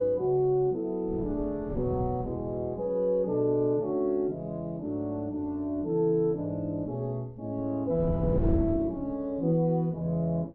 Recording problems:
wind noise; below 190 Hz, SNR 7 dB

